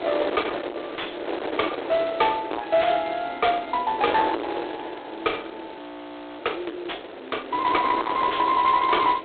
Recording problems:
phone line; 280 Hz to 3.6 kHz, G.726
distortion; soft clipping, signal-to-distortion ratio 4 dB
wind on the microphone; below 1.1 kHz, SNR 9 dB
audio freezing; at 6 s for 0.5 s

